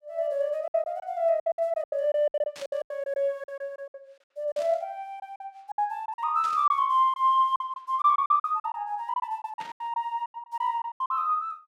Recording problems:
packet loss; 16% of the sound replaced, filled with silence
burst of static; 4 times, first at 2.5 s; peak -11 dB vs average level

